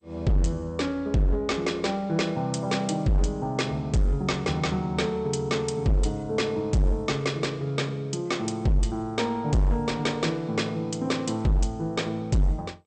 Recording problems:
codec artefacts; MP2, log-spectral distance 2 dB, nothing above 8.5 kHz
distorted audio; hard clipping, signal-to-distortion ratio 10 dB

